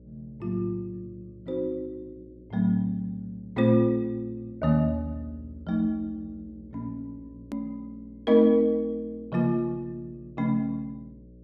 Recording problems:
electrical hum; 60 Hz, harmonics up to 600 Hz, SNR 24 dB
click at an edit; at 7.5 s

